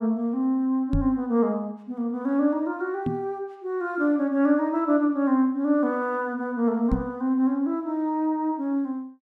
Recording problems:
knock on the microphone; at 1 s, at 3 s and at 7 s; peak +2 dB vs average level

